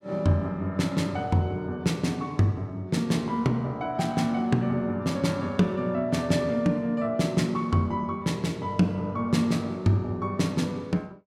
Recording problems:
none

